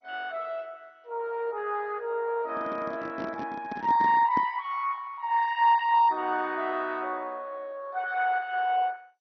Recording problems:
codec artefacts; MP2, log-spectral distance 3 dB
microphone handling noise; from 2.5 to 4.5 s; peak -3 dB vs average level

